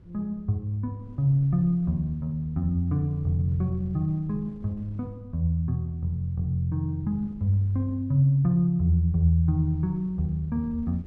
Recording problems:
wind noise; below 150 Hz, SNR 23 dB

